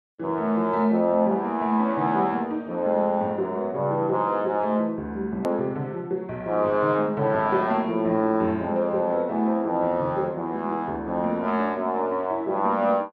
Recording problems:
click at an edit; at 5.5 s

